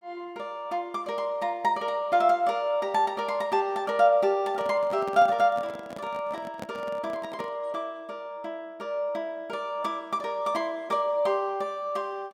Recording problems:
microphone handling noise; from 4.5 to 7.5 s; peak -6 dB vs average level

